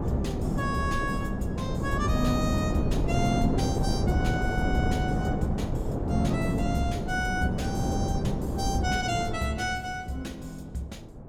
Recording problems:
wind noise; below 320 Hz, SNR -2 dB

